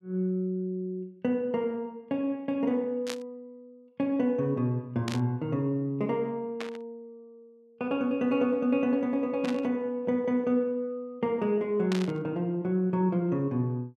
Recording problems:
burst of static; 5 times, first at 3 s; peak -3 dB vs average level

